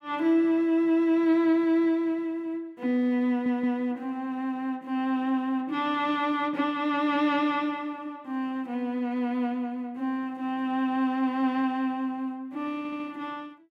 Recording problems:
stutter; at 3.5 s and at 13 s

